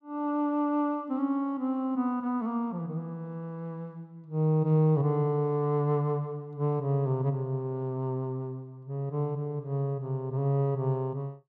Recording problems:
none

